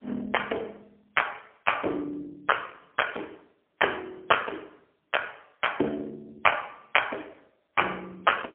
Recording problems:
telephone audio; 260 Hz to 3.2 kHz, AMR-NB, then MP3

